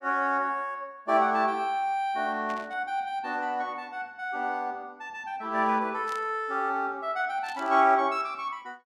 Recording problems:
static burst; at 2.5 s, at 6 s and at 7.5 s; peak -11 dB vs average level

